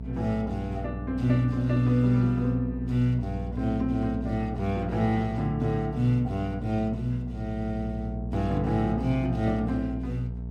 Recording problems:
electrical hum; 60 Hz, harmonics up to 480 Hz, SNR 8 dB

